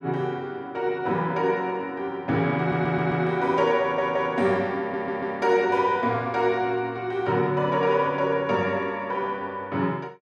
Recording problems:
stutter; at 2.5 s, at 4 s and at 5 s

